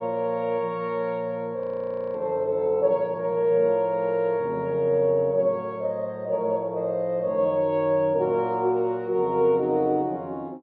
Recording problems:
low-pass filter; nothing above 5.5 kHz
audio freezing; at 1.5 s for 0.5 s

